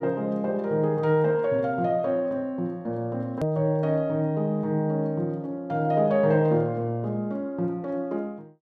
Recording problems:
hard cut with a click; at 3.5 s

